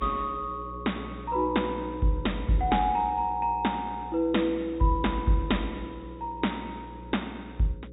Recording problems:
treble cut off; nothing above 4 kHz
hum; 60 Hz, harmonics up to 540 Hz, SNR 15 dB

